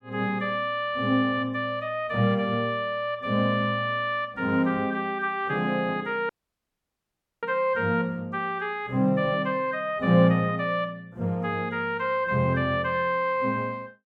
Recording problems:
audio cutting out; at 6.5 s for 1 s

